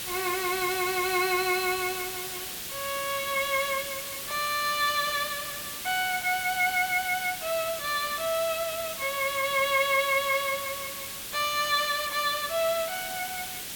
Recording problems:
hiss; slope +1 dB per octave, SNR 6 dB

